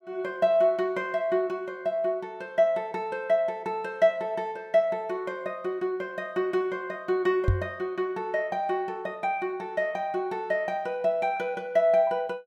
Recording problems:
knock on the microphone; at 7.5 s; peak +6 dB vs average level

